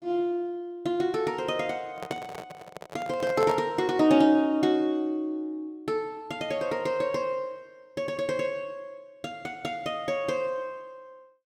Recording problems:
handling noise; from 2 to 3.5 s; peak -2 dB vs average level

